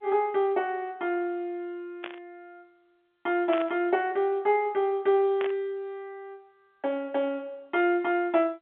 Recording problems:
phone line; 240 Hz to 3.6 kHz, G.711
static burst; at 2 s, at 3.5 s and at 5.5 s; peak -4 dB vs average level

